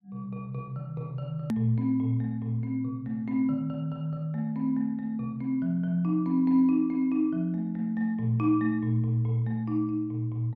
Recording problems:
edit click; at 1.5 s

